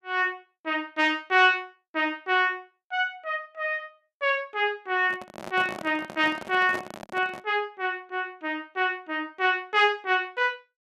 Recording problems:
handling noise; from 5 to 7.5 s; peak -5 dB vs average level

